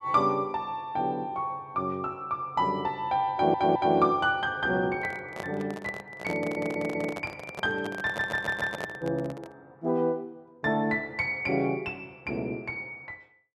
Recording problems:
audio stuttering; at 3.5 s, at 6.5 s and at 8 s
handling noise; from 5 to 9.5 s; peak -3 dB vs average level

